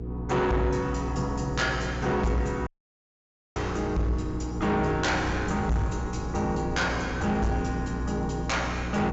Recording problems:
treble cut off; nothing above 7.4 kHz
distortion; soft clipping, signal-to-distortion ratio 10 dB
hum; 60 Hz, harmonics up to 480 Hz, SNR 7 dB
wind noise; below 190 Hz, SNR 14 dB
audio cutting out; at 2.5 s for 1 s

